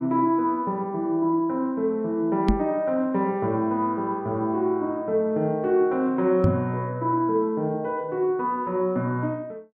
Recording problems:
knock on the microphone; at 2.5 s and at 6.5 s; peak +6 dB vs average level

